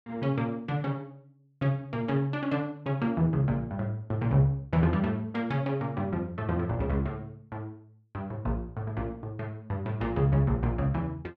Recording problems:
none

